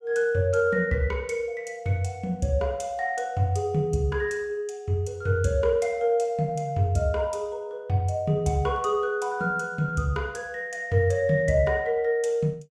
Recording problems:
none

